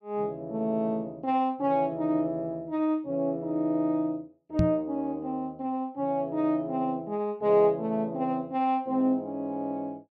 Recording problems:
knock on the microphone; at 4.5 s; peak +6 dB vs average level

